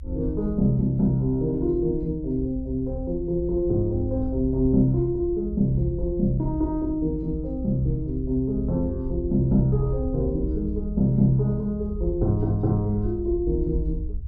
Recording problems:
rumble; below 64 Hz, SNR 9 dB

